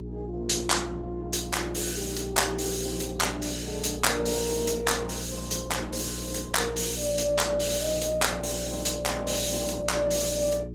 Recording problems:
lossy codec; Opus, log-spectral distance 6 dB
hum; 60 Hz, harmonics up to 420 Hz, SNR 10 dB

